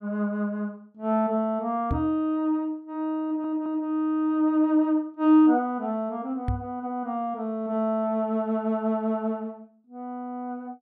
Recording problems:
microphone thump; at 2 s and at 6.5 s; peak +2 dB vs average level
stutter; at 3 s

